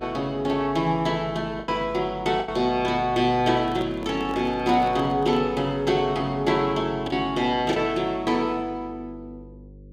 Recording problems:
electrical hum; 50 Hz, harmonics up to 550 Hz, SNR 20 dB
lost packets; 3% of the sound replaced, filled with the last packet
handling noise; from 3.5 to 5.5 s; peak -9 dB vs average level

